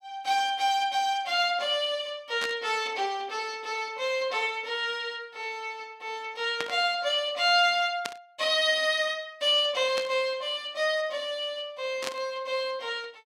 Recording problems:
burst of static; 5 times, first at 2.5 s; peak -1 dB vs average level

